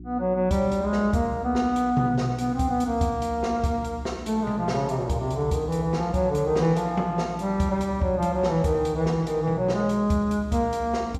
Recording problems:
electrical hum; 60 Hz, harmonics up to 360 Hz, SNR 18 dB

